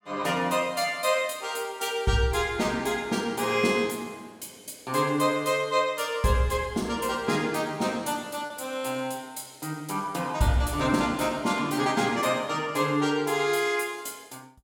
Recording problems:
packet loss; 0.3% of the sound replaced, filled with repeated pitch periods

